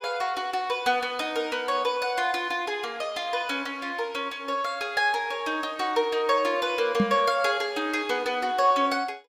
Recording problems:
knock on the microphone; at 7 s; peak +6 dB vs average level

